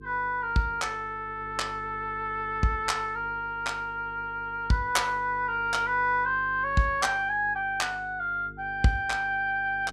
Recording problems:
electrical hum; 50 Hz, harmonics up to 450 Hz, SNR 20 dB

